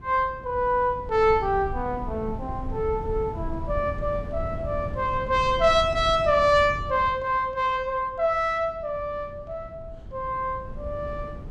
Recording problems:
wind noise; below 140 Hz, SNR 12 dB

